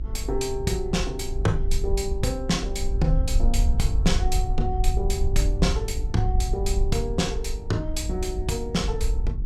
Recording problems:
hum; 50 Hz, harmonics up to 950 Hz, SNR 19 dB
low-frequency rumble; below 62 Hz, SNR 0 dB

